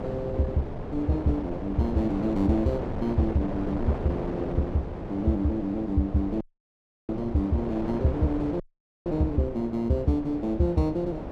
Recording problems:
wind noise; below 530 Hz, SNR 7 dB
audio cutting out; at 6.5 s for 0.5 s and at 8.5 s

